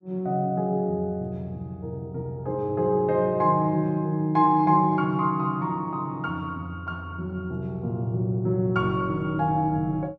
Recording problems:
none

